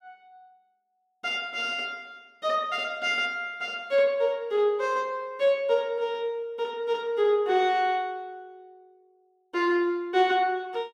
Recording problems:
none

